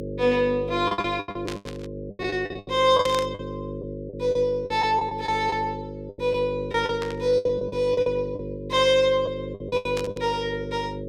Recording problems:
hum; 50 Hz, harmonics up to 600 Hz, SNR 10 dB
packet loss; 14% of the sound replaced, filled with the last packet
static burst; 4 times, first at 1.5 s; peak -5 dB vs average level

